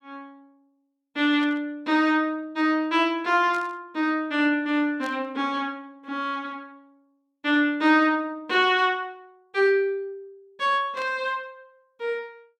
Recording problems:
static burst; 4 times, first at 1.5 s; peak -14 dB vs average level

